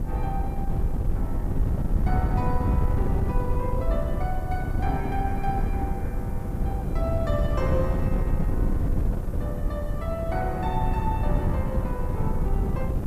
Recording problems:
background hiss; SNR 23 dB
wind on the microphone; below 130 Hz, SNR -5 dB

